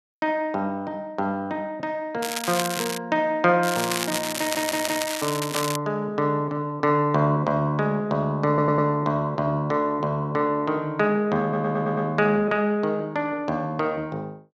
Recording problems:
crackling; at 2 s and from 3.5 to 6 s; loose cable, SNR 5 dB
stutter; at 4.5 s, at 8.5 s and at 11 s

